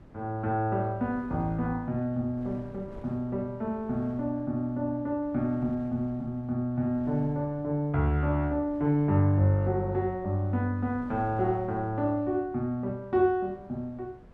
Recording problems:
wind on the microphone; below 330 Hz, SNR 21 dB

